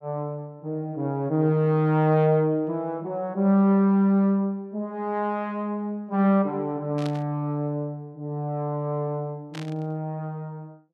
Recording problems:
static burst; at 7 s and at 9.5 s; peak -10 dB vs average level

